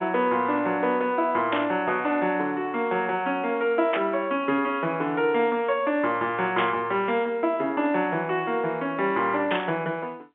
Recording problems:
telephone audio; 240 Hz to 3.5 kHz, G.711
static burst; 4 times, first at 1.5 s; peak 0 dB vs average level

